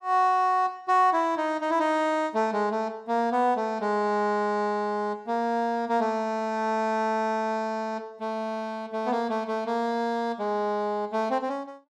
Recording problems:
none

